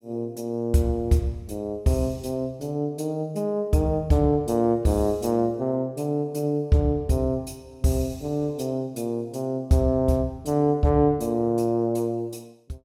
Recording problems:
none

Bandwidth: 16.5 kHz